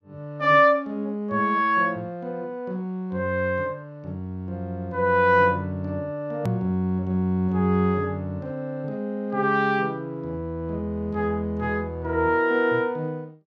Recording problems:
click at an edit; at 6.5 s

